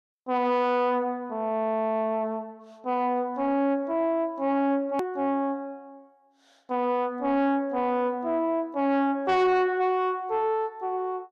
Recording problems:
distortion; soft clipping, signal-to-distortion ratio 11 dB
click at an edit; at 5 s

